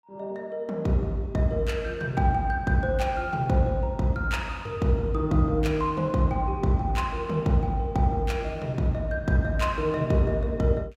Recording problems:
none

